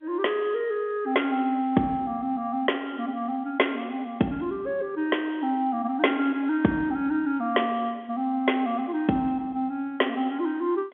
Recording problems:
phone line; 170 Hz to 3.4 kHz, G.711

